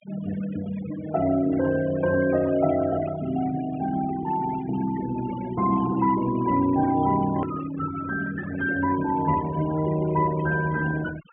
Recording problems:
treble cut off; nothing above 3.1 kHz
noise reduction artefacts; signal-to-artefact ratio 16 dB
edit click; at 7.5 s

